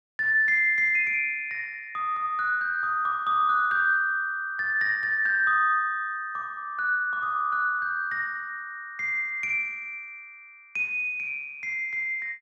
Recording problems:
none

